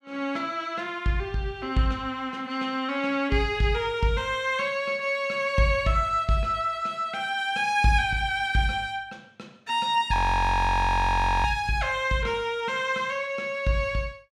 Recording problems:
frozen audio; at 10 s for 1.5 s

